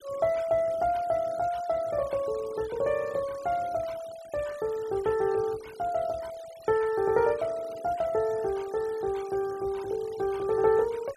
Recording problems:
denoising artefacts; signal-to-artefact ratio 21 dB

